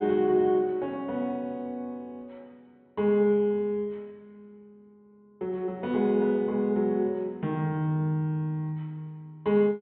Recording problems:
low-pass filter; nothing above 4 kHz

